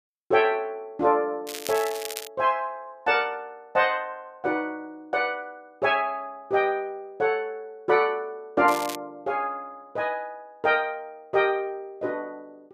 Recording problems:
crackling; at 1.5 s and at 8.5 s; loose cable, SNR 10 dB

